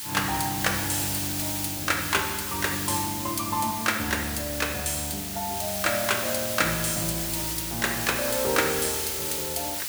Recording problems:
hiss; SNR 1 dB

